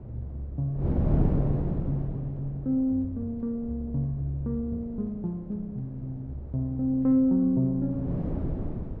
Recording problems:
wind noise; below 260 Hz, SNR 4 dB

